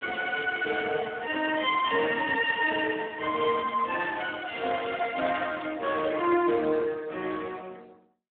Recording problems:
phone line; 260 Hz to 3.4 kHz, Speex

